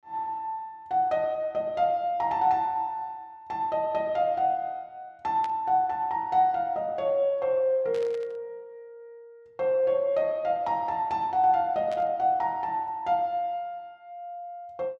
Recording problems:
burst of static; at 5.5 s, at 8 s and at 12 s; peak -12 dB vs average level

